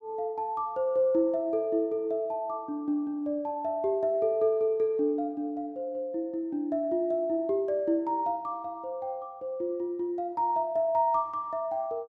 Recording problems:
none

